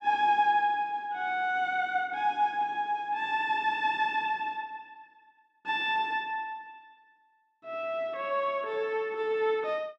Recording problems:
none

